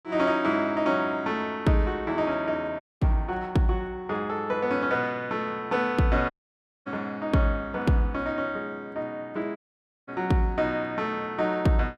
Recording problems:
audio cutting out; at 3 s, at 6.5 s for 0.5 s and at 9.5 s for 0.5 s

